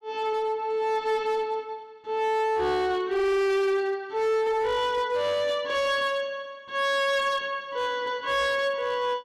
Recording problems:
distorted audio; hard clipping, signal-to-distortion ratio 10 dB

